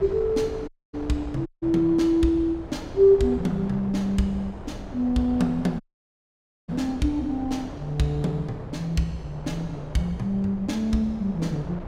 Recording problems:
wind on the microphone; below 540 Hz, SNR 14 dB
audio cutting out; at 0.5 s, at 1.5 s and at 6 s for 1 s

